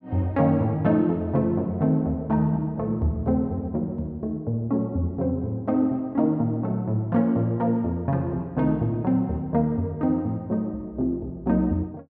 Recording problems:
none

